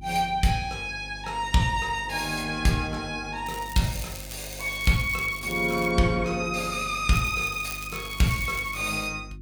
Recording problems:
electrical hum; 50 Hz, harmonics up to 350 Hz, SNR 17 dB
crackling; from 3.5 to 6 s and from 7 to 9 s; loose cable, SNR 14 dB

